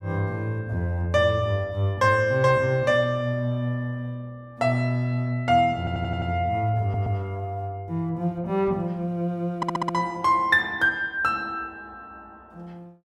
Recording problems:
stutter; at 6 s, at 7 s and at 9.5 s

